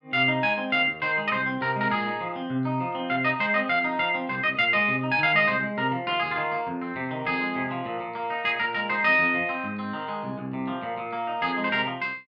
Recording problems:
none

